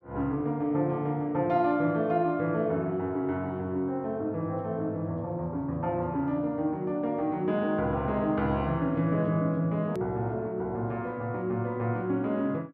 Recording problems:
edit click; at 10 s

